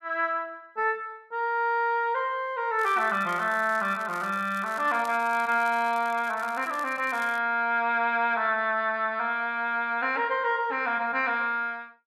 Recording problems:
crackling; from 3 to 7.5 s; loose cable, SNR 23 dB

